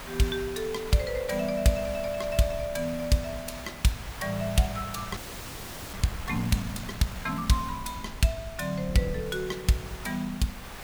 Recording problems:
background hiss; SNR 13 dB
wind noise; below 160 Hz, SNR 16 dB
frozen audio; at 5 s for 1 s

